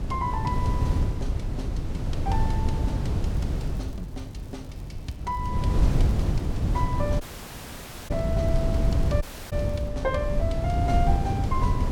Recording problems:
hum; 50 Hz, harmonics up to 550 Hz, SNR 12 dB
wind on the microphone; below 140 Hz, SNR -6 dB
crackling; from 3.5 to 5.5 s and from 6 to 10 s; loose cable, SNR 25 dB
dropout; at 7 s for 1 s and at 9 s

